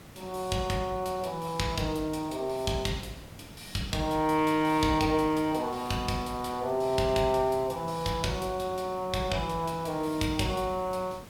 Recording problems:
background hiss; slope -5 dB per octave, SNR 18 dB

